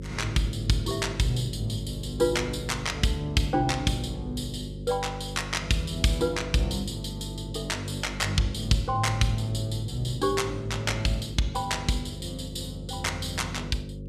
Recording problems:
mains hum; 50 Hz, harmonics up to 550 Hz, SNR 9 dB

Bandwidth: 14.5 kHz